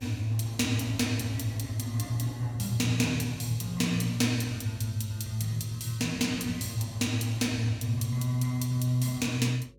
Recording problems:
mains hum; 50 Hz, harmonics up to 550 Hz, SNR 28 dB

